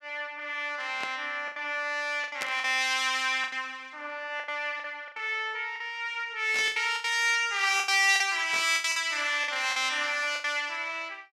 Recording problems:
packet loss; 10% of the sound replaced, filled with the last packet
burst of static; 4 times, first at 1 s; peak -4 dB vs average level

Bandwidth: 15.5 kHz